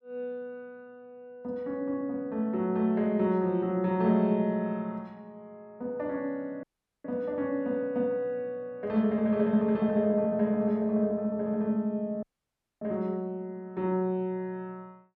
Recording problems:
audio cutting out; at 6.5 s and at 12 s for 0.5 s

